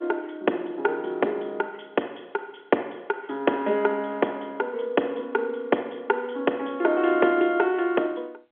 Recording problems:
telephone audio; 260 Hz to 3.3 kHz, G.711

